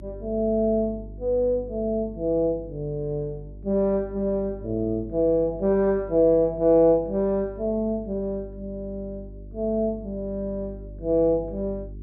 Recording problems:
electrical hum; 50 Hz, harmonics up to 400 Hz, SNR 17 dB

